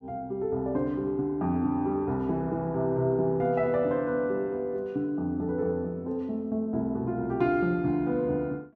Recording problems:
none

